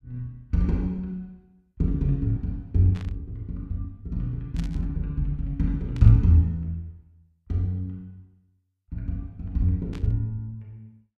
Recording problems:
burst of static; 4 times, first at 3 s; peak -13 dB vs average level

